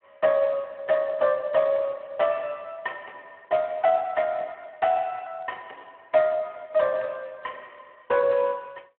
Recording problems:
phone line; 300 Hz to 3.8 kHz, Speex

